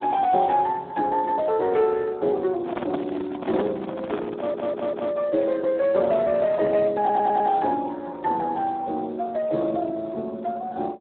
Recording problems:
telephone audio; 190 Hz to 4 kHz, Speex
handling noise; from 2.5 to 5 s; peak +1 dB vs average level
stutter; at 4.5 s and at 7 s

